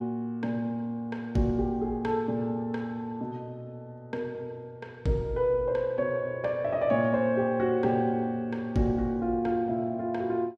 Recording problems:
none

